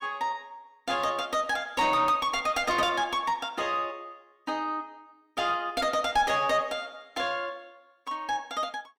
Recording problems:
distortion; soft clipping, signal-to-distortion ratio 10 dB

